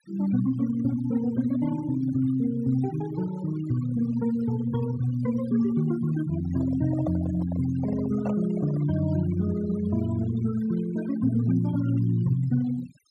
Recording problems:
noise reduction artefacts; signal-to-artefact ratio 16 dB
microphone handling noise; from 6.5 to 9 s; peak -5 dB vs average level

